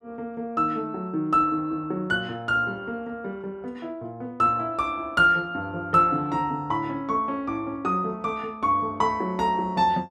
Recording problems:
none

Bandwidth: 13 kHz